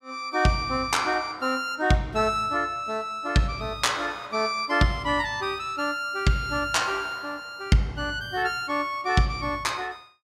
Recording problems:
none

